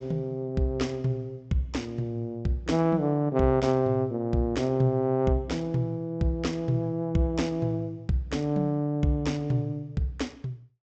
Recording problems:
treble missing; nothing above 8 kHz

